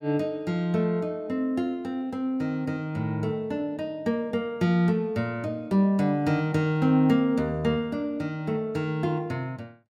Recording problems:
none

